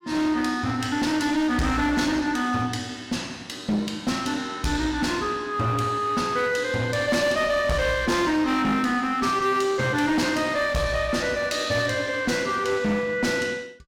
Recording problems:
distorted audio; hard clipping, uneven, signal-to-distortion ratio 10 dB

